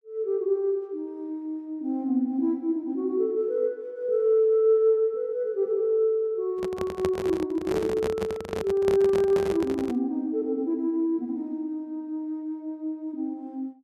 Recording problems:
microphone handling noise; from 6.5 to 10 s; peak 0 dB vs average level

